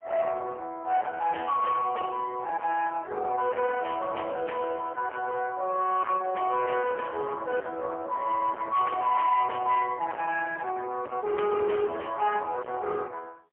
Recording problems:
telephone audio; 340 Hz to 3 kHz, AMR-NB, then MP3
distorted audio; soft clipping, signal-to-distortion ratio 6 dB

